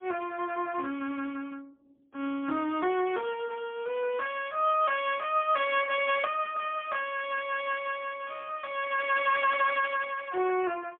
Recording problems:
telephone audio; 280 Hz to 3.1 kHz, AMR-NB, then MP3

